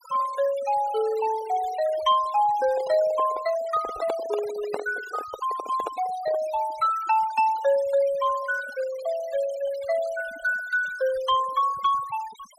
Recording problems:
noise reduction artefacts; signal-to-artefact ratio 17 dB
microphone handling noise; from 2.5 to 6.5 s; peak -1 dB vs average level

